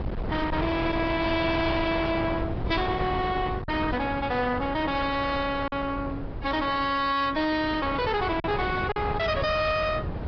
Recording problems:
treble missing; nothing above 5 kHz
lossy compression; AAC, log-spectral distance 3 dB
distortion; hard clipping, signal-to-distortion ratio 7 dB
wind noise; below 660 Hz, SNR 7 dB
lost packets; 1.7% of the sound replaced, filled with silence

